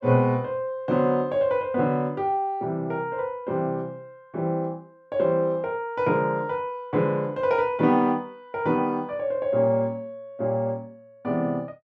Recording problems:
none

